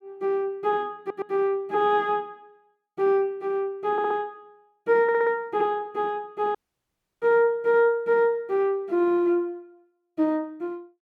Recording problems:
stutter; at 1 s, at 4 s and at 5 s
dropout; at 6.5 s for 0.5 s

